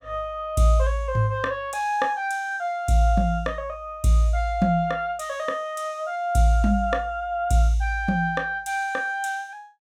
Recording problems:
none

